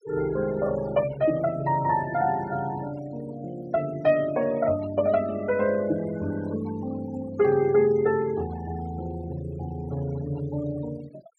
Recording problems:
denoising artefacts; signal-to-artefact ratio 18 dB

